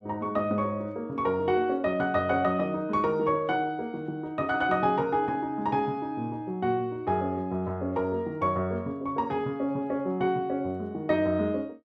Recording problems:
none

